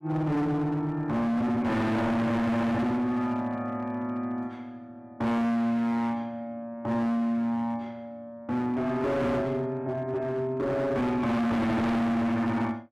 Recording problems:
distortion; hard clipping, signal-to-distortion ratio 6 dB

